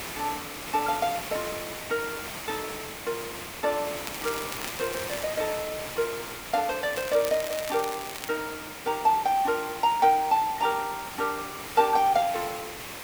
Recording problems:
background hiss; SNR 8 dB
crackling; from 4 to 5 s and from 7 to 8.5 s; loose cable, SNR 11 dB

